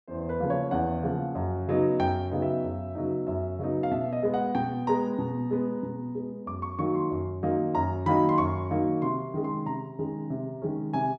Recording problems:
none

